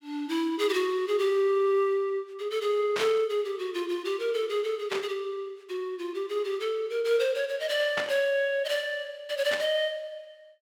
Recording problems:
static burst; 4 times, first at 3 s; peak +1 dB vs average level

